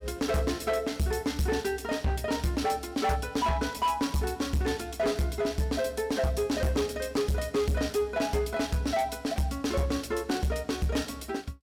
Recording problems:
distorted audio; hard clipping, signal-to-distortion ratio 11 dB

